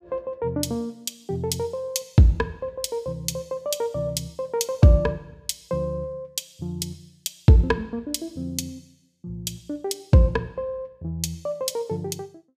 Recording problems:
none

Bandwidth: 15 kHz